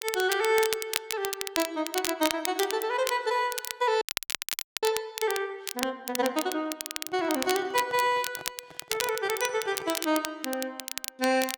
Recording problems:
crackling; vinyl, SNR 5 dB
audio freezing; at 4 s for 1 s
microphone handling noise; from 7 to 10 s; peak -11 dB vs average level

